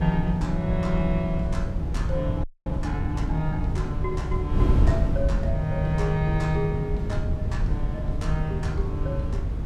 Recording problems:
hum; 60 Hz, harmonics up to 840 Hz, SNR 23 dB
low-frequency rumble; below 92 Hz, SNR 7 dB
wind noise; below 120 Hz, SNR -1 dB
frozen audio; at 2.5 s

